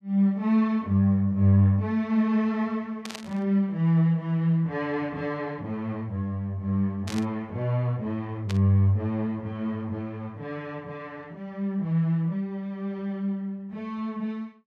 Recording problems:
burst of static; at 3 s, at 7 s and at 8.5 s; peak -6 dB vs average level

